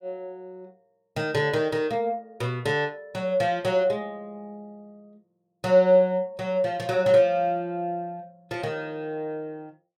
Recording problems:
none

